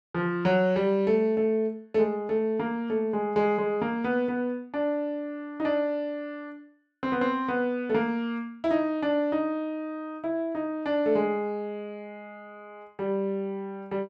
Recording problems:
none

